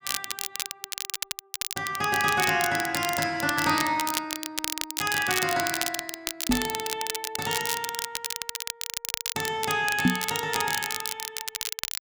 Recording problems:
crackle; vinyl, SNR 3 dB
microphone bump; at 6.5 s and at 10 s; peak +9 dB vs average level

